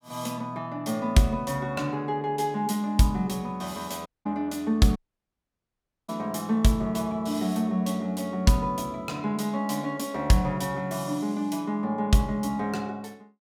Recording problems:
audio cutting out; at 4 s and at 5 s for 1 s

